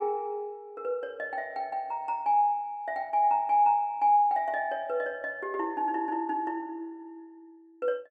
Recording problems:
none

